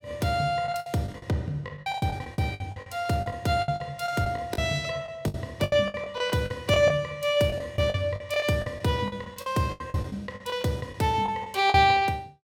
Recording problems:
packet loss; 16% of the sound replaced, filled with the last packet

